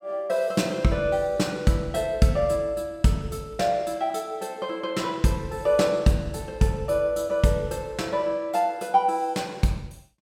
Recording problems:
none

